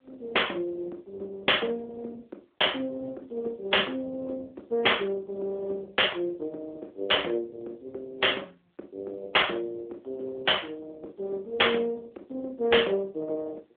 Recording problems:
phone line; 320 Hz to 3.5 kHz, AMR-NB

